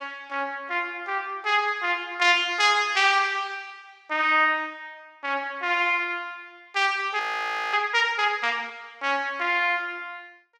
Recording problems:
frozen audio; at 7 s for 0.5 s

